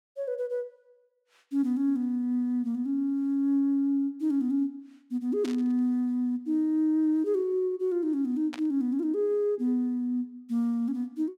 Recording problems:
burst of static; at 5.5 s and at 8.5 s; peak -9 dB vs average level

